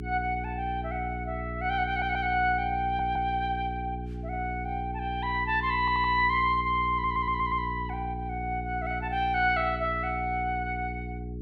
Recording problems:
hum; 60 Hz, harmonics up to 420 Hz, SNR 8 dB
audio stuttering; 4 times, first at 2 s

